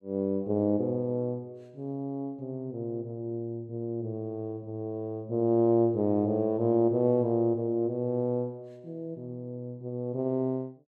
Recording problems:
none

